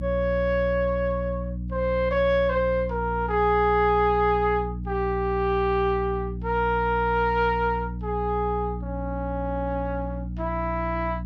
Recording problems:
electrical hum; 60 Hz, harmonics up to 300 Hz, SNR 8 dB

